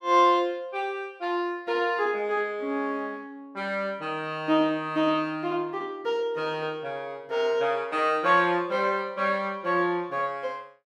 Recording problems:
none

